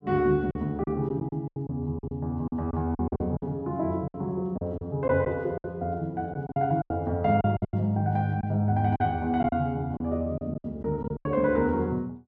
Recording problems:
packet loss; 11% of the sound replaced, filled with silence

